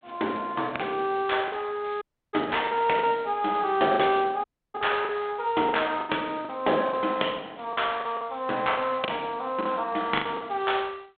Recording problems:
telephone audio; 260 Hz to 3.6 kHz, G.726
lost packets; 8% of the sound replaced, filled with the last packet
dropout; at 2 s and at 4.5 s

